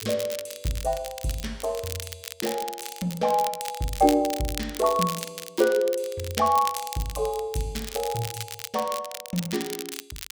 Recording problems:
crackle; vinyl, SNR 9 dB

